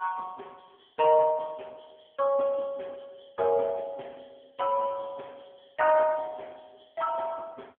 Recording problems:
phone line; 240 Hz to 2.2 kHz, AMR-NB

